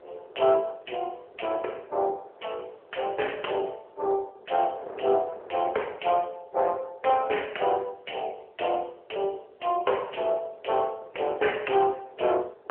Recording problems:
telephone audio; 340 Hz to 3.2 kHz, AMR-NB
wind on the microphone; below 680 Hz, SNR 21 dB

